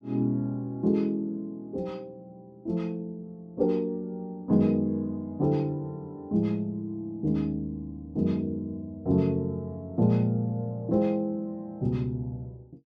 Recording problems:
none

